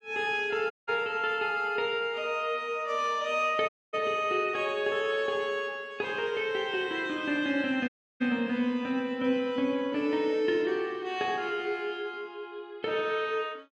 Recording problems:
dropout; at 0.5 s, at 3.5 s and at 8 s

